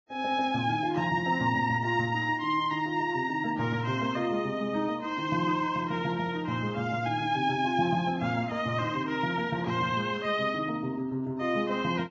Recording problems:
lossy compression; Vorbis, log-spectral distance 2 dB

